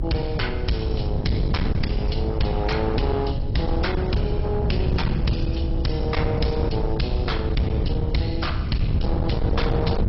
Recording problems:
codec artefacts; MP2, then AAC, log-spectral distance 3 dB, nothing above 5.5 kHz
distorted audio; hard clipping, signal-to-distortion ratio 8 dB
rumble; below 80 Hz, SNR 5 dB
wind on the microphone; below 160 Hz, SNR 0 dB

